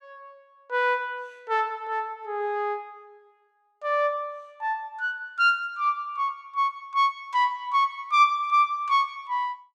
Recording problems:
none

